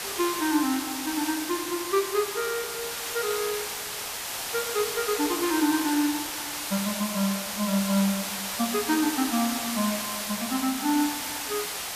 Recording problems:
background hiss; SNR 2 dB

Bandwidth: 14.5 kHz